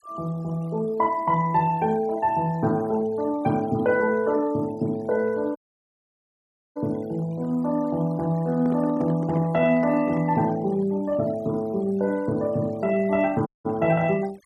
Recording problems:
denoising artefacts; signal-to-artefact ratio 23 dB
audio cutting out; at 5.5 s for 1 s and at 13 s
microphone handling noise; from 8.5 to 10 s; peak -5 dB vs average level

